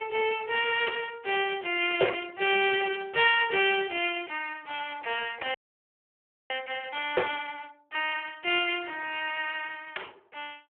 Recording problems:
phone line; 340 Hz to 3.4 kHz, Speex
frozen audio; at 5.5 s for 1 s

